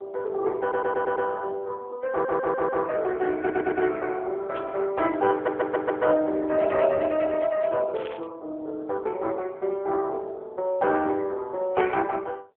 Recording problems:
telephone audio; 280 Hz to 2.6 kHz, AMR-NB
audio stuttering; 4 times, first at 0.5 s
static burst; at 4.5 s and at 8 s; peak -11 dB vs average level

